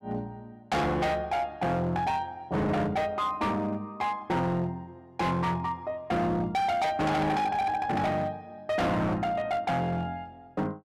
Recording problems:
distorted audio; hard clipping, signal-to-distortion ratio 7 dB

